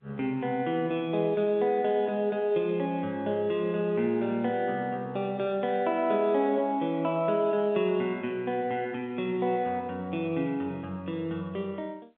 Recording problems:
telephone audio; 190 Hz to 3.5 kHz, G.711

